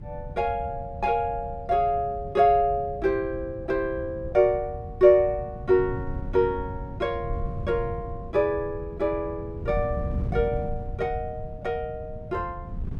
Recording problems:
wind on the microphone; below 140 Hz, SNR 11 dB

